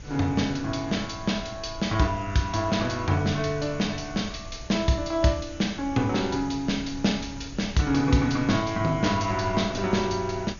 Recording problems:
low-pass filter; nothing above 6.8 kHz
hiss; SNR 23 dB
wind on the microphone; below 130 Hz, SNR 17 dB

